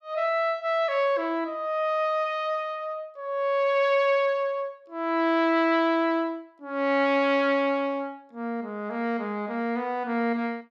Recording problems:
none

